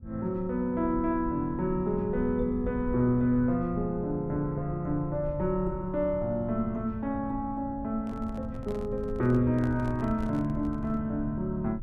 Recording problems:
low-frequency rumble; below 110 Hz, SNR 12 dB
microphone handling noise; from 8 to 11 s; peak -11 dB vs average level

